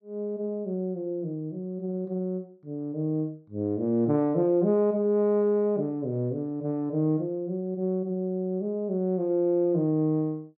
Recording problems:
none

